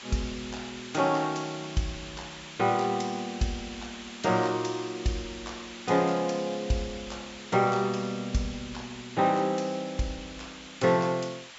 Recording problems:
low-pass filter; nothing above 8 kHz
background hiss; SNR 14 dB

